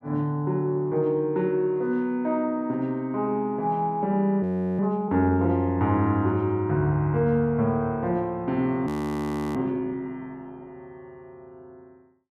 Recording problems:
audio freezing; at 4.5 s and at 9 s for 0.5 s

